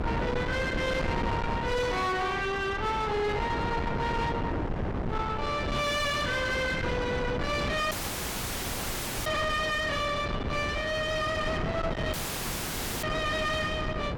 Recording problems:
distorted audio; soft clipping, signal-to-distortion ratio 7 dB
wind noise; below 930 Hz, SNR 3 dB
audio cutting out; at 8 s for 1.5 s and at 12 s for 1 s

